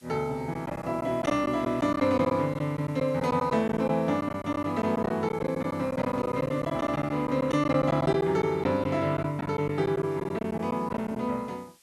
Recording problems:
background hiss; slope +2 dB per octave, SNR 30 dB
packet loss; 9% of the sound replaced, filled with silence

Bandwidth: 12.5 kHz